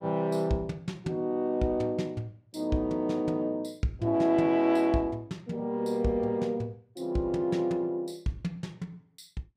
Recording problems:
none

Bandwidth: 15.5 kHz